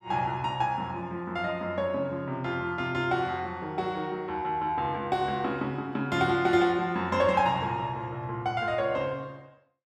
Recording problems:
none

